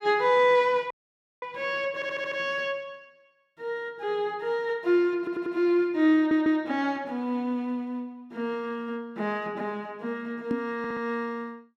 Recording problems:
audio cutting out; at 1 s for 0.5 s
audio stuttering; 4 times, first at 2 s
microphone thump; at 11 s; peak +2 dB vs average level

